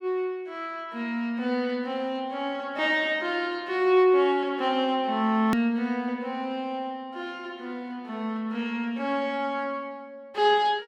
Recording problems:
edit click; at 5.5 s

